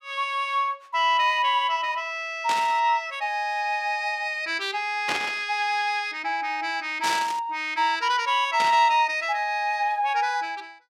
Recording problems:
burst of static; 4 times, first at 2.5 s; peak 0 dB vs average level

